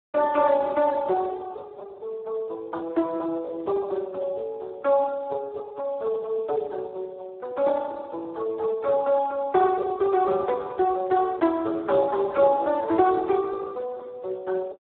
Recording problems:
phone line; 300 Hz to 2.1 kHz, Speex

